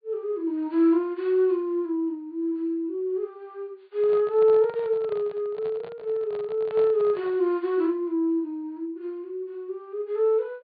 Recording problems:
low-pass filter; nothing above 4.6 kHz
handling noise; from 4 to 7.5 s; peak -9 dB vs average level

